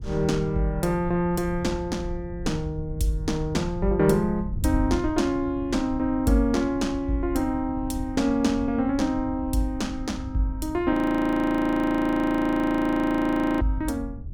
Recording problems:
wind noise; below 94 Hz, SNR 12 dB
audio freezing; at 11 s for 2.5 s

